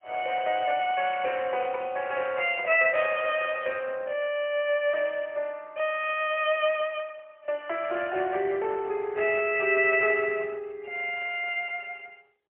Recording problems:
telephone audio; 340 Hz to 3.2 kHz, AMR-NB, then MP3

